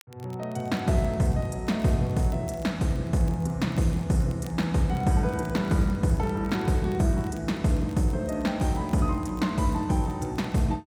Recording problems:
crackling; vinyl, SNR 29 dB

